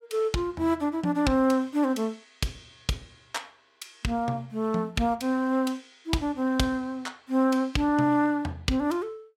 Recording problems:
none

